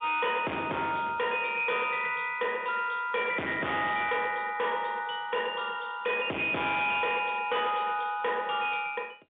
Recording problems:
telephone audio; 300 Hz to 3.6 kHz, G.711
distortion; hard clipping, uneven, signal-to-distortion ratio 7 dB

